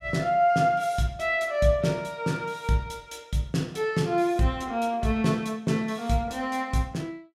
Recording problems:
none

